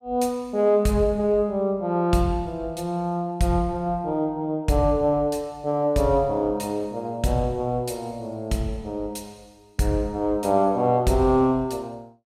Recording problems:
none

